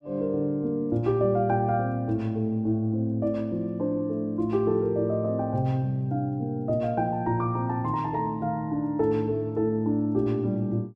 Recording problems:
none

